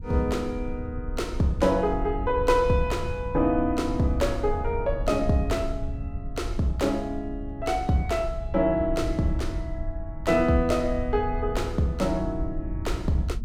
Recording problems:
rumble; below 84 Hz, SNR 8 dB

